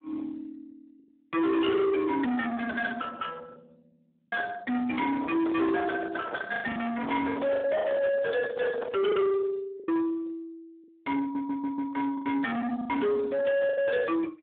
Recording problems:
phone line; 240 Hz to 2.8 kHz, Speex
distortion; soft clipping, signal-to-distortion ratio 7 dB
packet loss; 6% of the sound replaced, filled with the last packet
handling noise; from 5 to 9 s; peak -1 dB vs average level
audio stuttering; at 11 s

